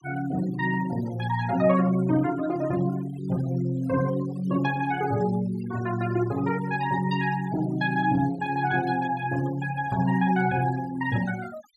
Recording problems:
denoising artefacts; signal-to-artefact ratio 18 dB

